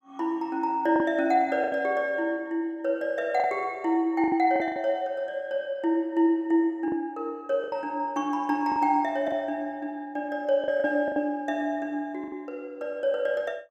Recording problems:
packet loss; 6% of the sound replaced, filled with the last packet

